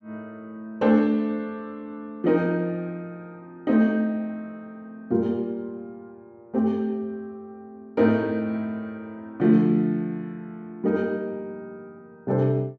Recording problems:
none

